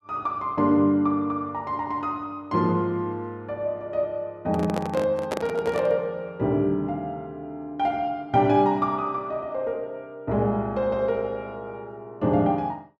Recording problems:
handling noise; from 4.5 to 6 s; peak +2 dB vs average level

